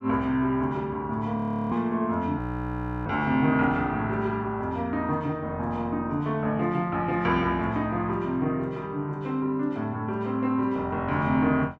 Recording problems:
audio freezing; at 1.5 s and at 2.5 s for 0.5 s

